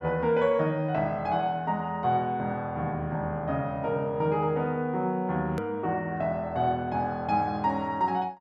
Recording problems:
hard cut with a click; at 5.5 s

